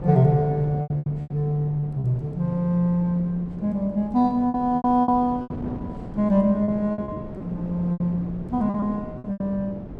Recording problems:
wind on the microphone; below 350 Hz, SNR 13 dB
lost packets; 11% of the sound replaced, filled with repeated pitch periods

